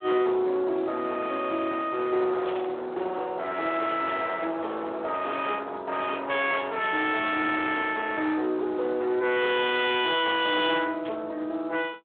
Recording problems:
telephone audio; 280 Hz to 3.9 kHz, Speex
distortion; hard clipping, signal-to-distortion ratio 10 dB
static burst; 4 times, first at 2.5 s; peak -7 dB vs average level

